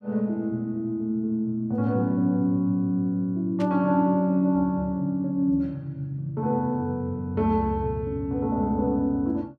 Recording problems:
static burst; at 3.5 s; peak -12 dB vs average level

